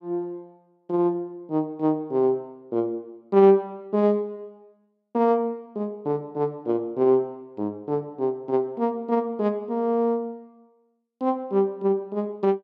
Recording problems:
none

